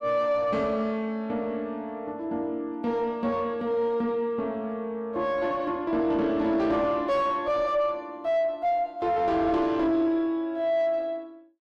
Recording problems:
distorted audio; soft clipping, signal-to-distortion ratio 10 dB

